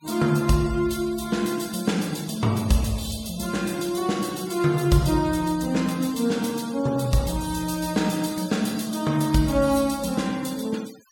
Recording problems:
denoising artefacts; signal-to-artefact ratio 18 dB

